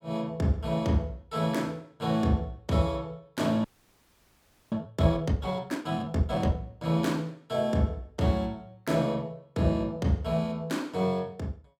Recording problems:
frozen audio; at 3.5 s for 1 s

